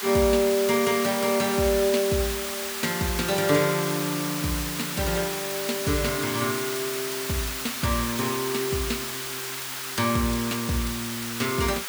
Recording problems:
hiss; SNR 4 dB

